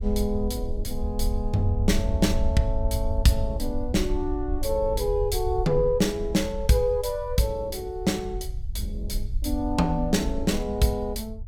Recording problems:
low-frequency rumble; below 68 Hz, SNR 6 dB

